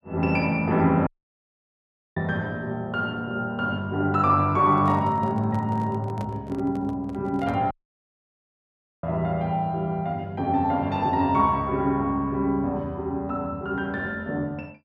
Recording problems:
dropout; at 1 s for 1 s and at 7.5 s for 1.5 s
microphone handling noise; from 4.5 to 7.5 s; peak -9 dB vs average level

